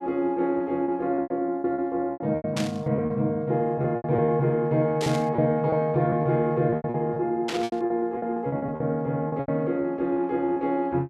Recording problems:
packet loss; 13% of the sound replaced, filled with repeated pitch periods
burst of static; at 2.5 s, at 5 s and at 7.5 s; peak -2 dB vs average level

